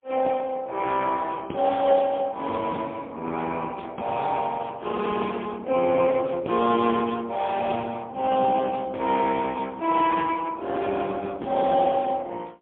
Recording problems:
telephone audio; 220 Hz to 3.5 kHz, AMR-NB, then MP3

